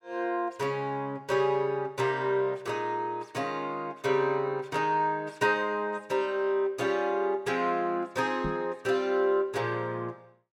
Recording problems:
microphone thump; at 8.5 s; peak -3 dB vs average level

